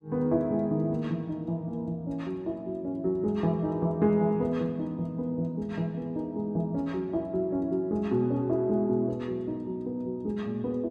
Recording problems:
none

